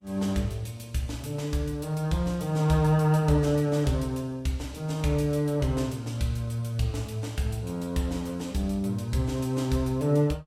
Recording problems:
lossy codec; Vorbis, log-spectral distance 2 dB, nothing above 15.1 kHz

